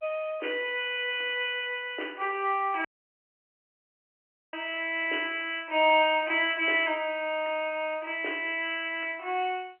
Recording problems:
telephone audio; 260 Hz to 3.1 kHz, G.711
audio cutting out; at 3 s for 1.5 s

